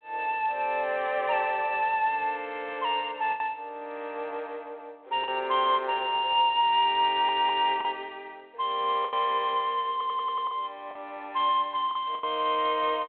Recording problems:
phone line; 340 Hz to 3.5 kHz, G.726
packet loss; 4% of the sound replaced, filled with the last packet
stutter; at 7 s and at 10 s

